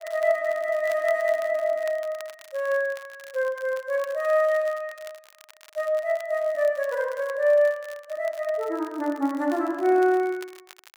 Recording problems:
crackling; vinyl, SNR 24 dB

